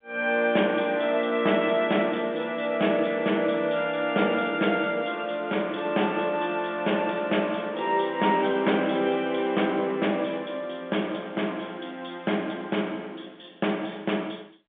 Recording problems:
phone line; 220 Hz to 3.6 kHz, G.711

